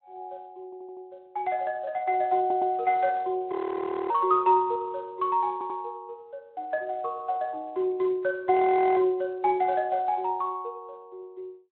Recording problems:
telephone audio; 300 Hz to 3.4 kHz, Speex
audio stuttering; at 0.5 s, at 2.5 s and at 5.5 s
audio freezing; at 3.5 s for 0.5 s and at 8.5 s

